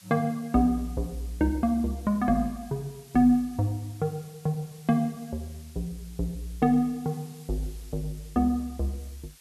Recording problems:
hiss; slope +2 dB per octave, SNR 24 dB

